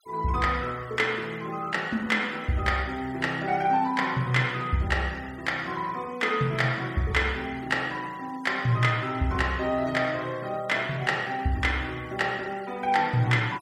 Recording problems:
noise reduction artefacts; signal-to-artefact ratio 23 dB

